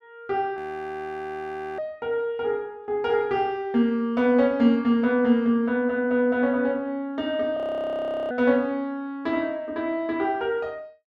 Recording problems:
frozen audio; at 0.5 s for 1 s and at 7.5 s for 0.5 s

